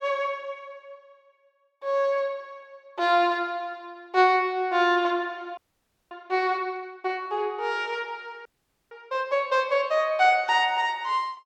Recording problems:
frozen audio; at 5.5 s for 0.5 s and at 8.5 s

